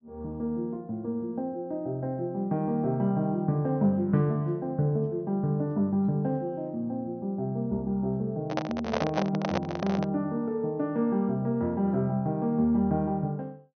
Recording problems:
treble cut off; nothing above 6.3 kHz
handling noise; from 8.5 to 10 s; peak +3 dB vs average level

